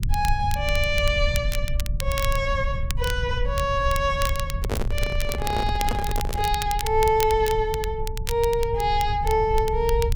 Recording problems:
rumble; below 78 Hz, SNR 5 dB
crackling; vinyl, SNR 11 dB
microphone handling noise; from 4.5 to 6.5 s; peak 0 dB vs average level

